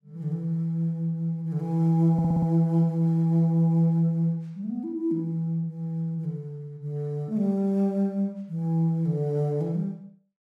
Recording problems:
stutter; at 2 s

